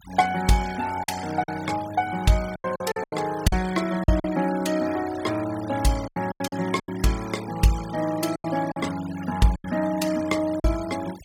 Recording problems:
noise reduction artefacts; signal-to-artefact ratio 16 dB
packet loss; 9% of the sound replaced, filled with silence

